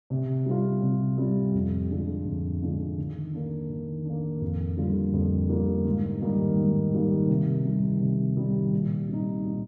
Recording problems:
none

